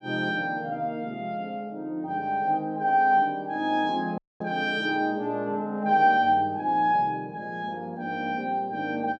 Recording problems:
audio cutting out; at 4 s

